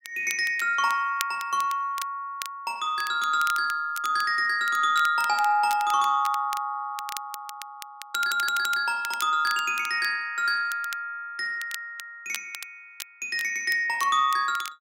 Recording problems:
crackle; vinyl, SNR 15 dB
audio stuttering; at 8 s

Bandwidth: 16 kHz